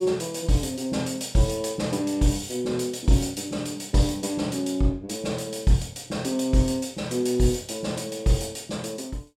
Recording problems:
none

